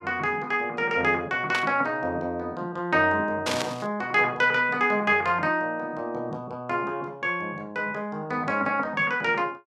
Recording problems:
static burst; at 1.5 s and at 3.5 s; peak +1 dB vs average level

